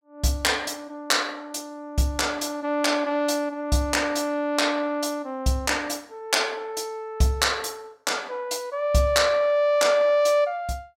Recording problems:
none

